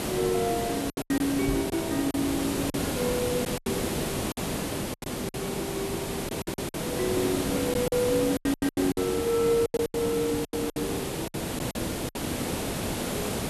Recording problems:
hiss; slope -5 dB per octave, SNR 2 dB
lost packets; 12% of the sound replaced, filled with silence
knock on the microphone; at 1.5 s; peak +1 dB vs average level

